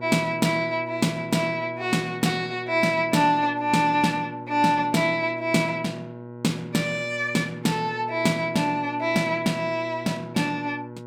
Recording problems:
hum; 60 Hz, harmonics up to 1.6 kHz, SNR 15 dB

